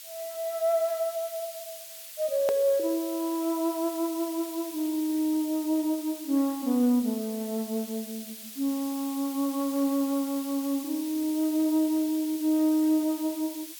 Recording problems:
hiss; slope +5 dB per octave, SNR 12 dB
edit click; at 2.5 s

